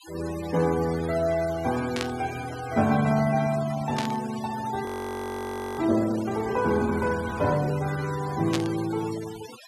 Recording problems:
noise reduction artefacts; signal-to-artefact ratio 14 dB
static burst; at 2 s, at 4 s and at 8.5 s; peak +1 dB vs average level
audio freezing; at 5 s for 1 s

